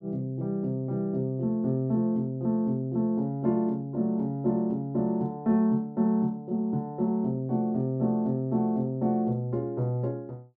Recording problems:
none

